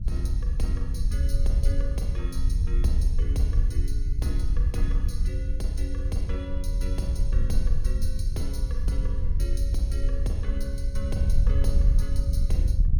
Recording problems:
wind noise; below 64 Hz, SNR -10 dB

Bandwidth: 17 kHz